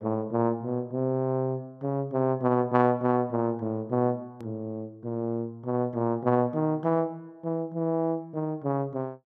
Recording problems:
hard cut with a click; at 4.5 s

